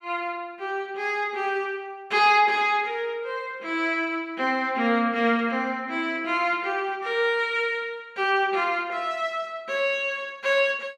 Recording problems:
none

